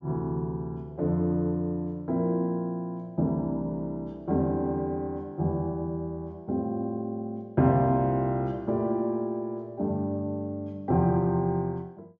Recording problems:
low-pass filter; nothing above 8 kHz

